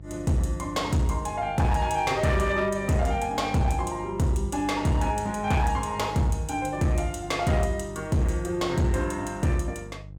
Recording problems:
distorted audio; hard clipping, signal-to-distortion ratio 11 dB
hum; 50 Hz, harmonics up to 500 Hz, SNR 17 dB

